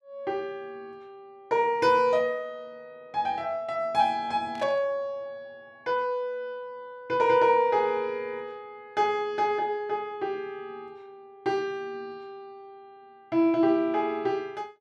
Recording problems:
static burst; at 4.5 s; peak -12 dB vs average level

